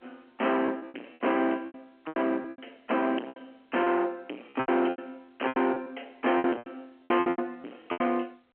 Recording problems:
telephone audio; 220 Hz to 3.2 kHz, G.711
distortion; soft clipping, signal-to-distortion ratio 6 dB
packet loss; 19% of the sound replaced, filled with repeated pitch periods

